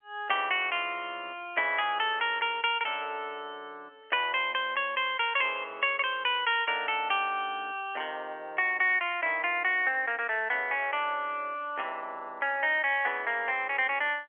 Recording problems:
phone line; 340 Hz to 3.4 kHz, G.711

